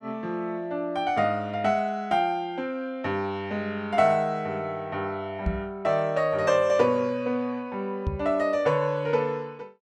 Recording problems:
knock on the microphone; at 5.5 s and at 8 s; peak +2 dB vs average level

